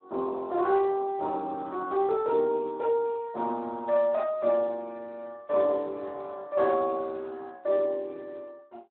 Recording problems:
telephone audio; 280 Hz to 2.8 kHz, Speex

